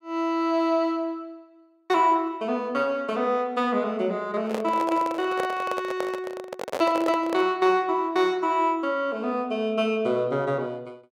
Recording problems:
microphone handling noise; from 4.5 to 7.5 s; peak -1 dB vs average level

